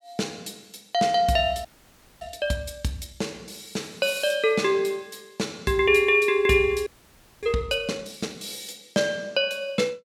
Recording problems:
audio freezing; at 1.5 s for 0.5 s and at 7 s for 0.5 s

